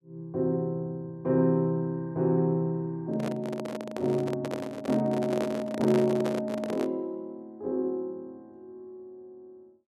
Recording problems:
handling noise; from 3 to 7 s; peak +1 dB vs average level

